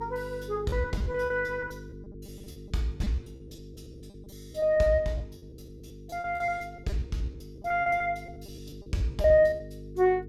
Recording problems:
hum; 50 Hz, harmonics up to 450 Hz, SNR 16 dB
packet loss; 16% of the sound replaced, filled with repeated pitch periods

